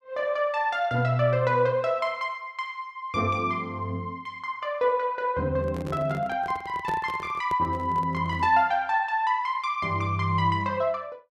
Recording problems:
microphone handling noise; from 5.5 to 8.5 s; peak -4 dB vs average level

